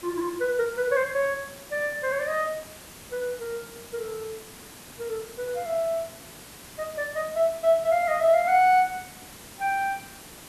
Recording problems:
hiss; slope -2 dB per octave, SNR 17 dB

